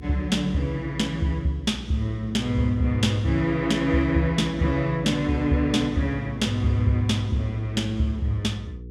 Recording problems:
electrical hum; 60 Hz, harmonics up to 480 Hz, SNR 15 dB

